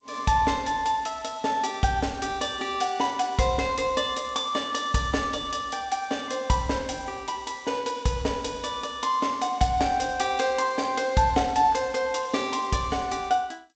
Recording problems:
lossy compression; G.722, log-spectral distance 4 dB, nothing above 7.8 kHz

